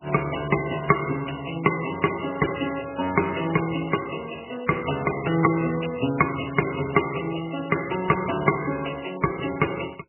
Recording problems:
lossy codec; MP3, log-spectral distance 15 dB, nothing above 2.9 kHz

